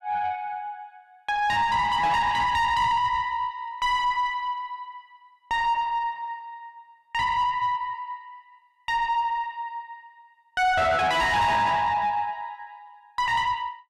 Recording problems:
distorted audio; soft clipping, signal-to-distortion ratio 6 dB

